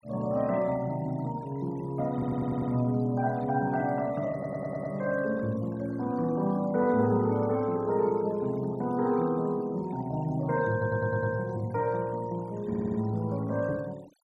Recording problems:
noise reduction artefacts; signal-to-artefact ratio 24 dB
stutter; 4 times, first at 2 s

